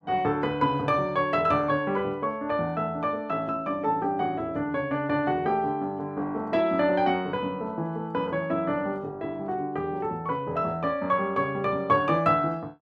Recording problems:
none

